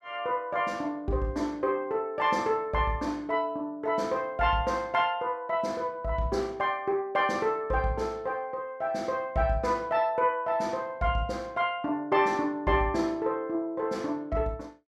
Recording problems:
none

